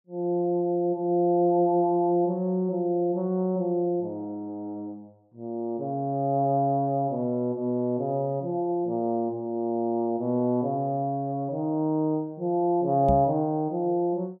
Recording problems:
microphone thump; at 13 s; peak +2 dB vs average level

